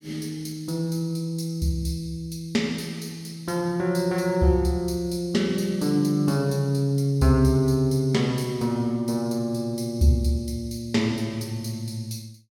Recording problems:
none

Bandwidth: 16.5 kHz